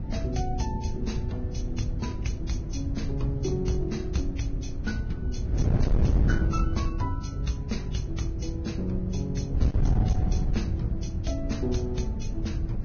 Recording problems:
codec artefacts; Vorbis, log-spectral distance 2 dB, nothing above 6.5 kHz
distortion; hard clipping, signal-to-distortion ratio 11 dB
wind on the microphone; below 130 Hz, SNR -3 dB

